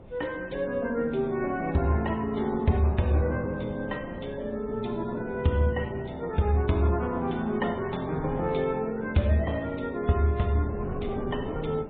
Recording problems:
treble cut off; nothing above 3.7 kHz
codec artefacts; MP3, log-spectral distance 3 dB
wind on the microphone; below 390 Hz, SNR 15 dB

